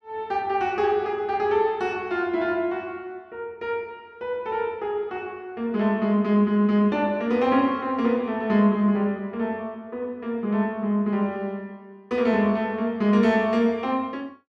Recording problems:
none

